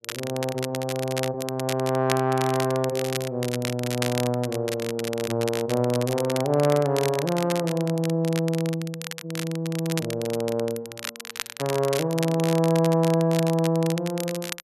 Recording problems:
crackling; vinyl, SNR 10 dB

